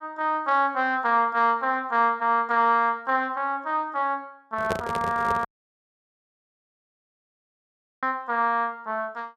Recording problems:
handling noise; at 4.5 s; peak 0 dB vs average level
dropout; at 5.5 s for 2.5 s

